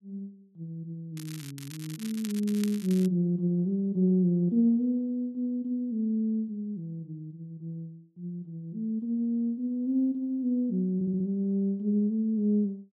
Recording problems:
crackle; from 1 to 3 s; loose cable, SNR 17 dB
audio stuttering; at 11 s

